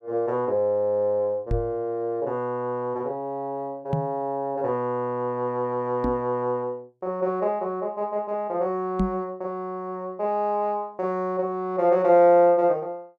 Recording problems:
microphone bump; 4 times, first at 1.5 s; peak +3 dB vs average level

